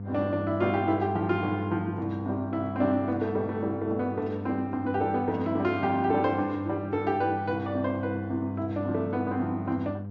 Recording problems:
low-pass filter; nothing above 7 kHz
electrical hum; 50 Hz, harmonics up to 700 Hz, SNR 8 dB

